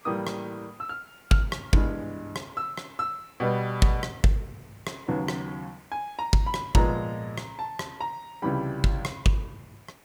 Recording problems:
background hiss; SNR 27 dB

